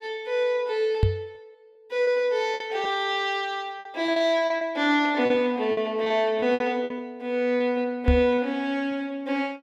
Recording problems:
lost packets; 8% of the sound replaced, filled with repeated pitch periods
knock on the microphone; at 1 s and at 8 s; peak +7 dB vs average level

